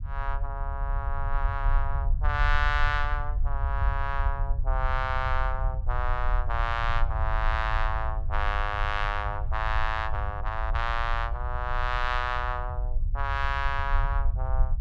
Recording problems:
rumble; below 62 Hz, SNR 0 dB

